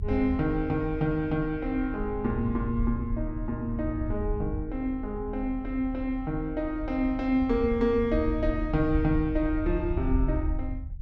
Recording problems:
low-frequency rumble; below 78 Hz, strongest tone 36 Hz, SNR 7 dB

